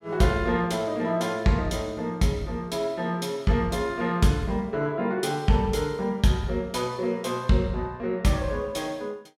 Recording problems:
none

